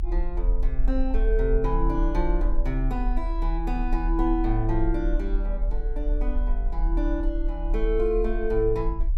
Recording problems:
rumble; below 38 Hz, strongest tone 36 Hz, SNR 0 dB

